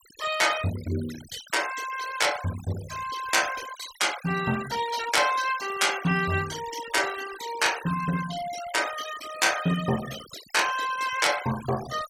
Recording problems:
noise reduction artefacts; signal-to-artefact ratio 12 dB

